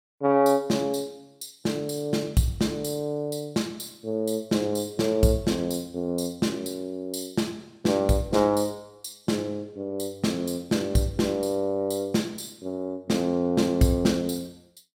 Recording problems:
none

